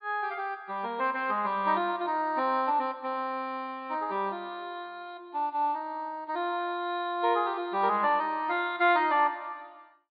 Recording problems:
treble cut off; nothing above 4.5 kHz

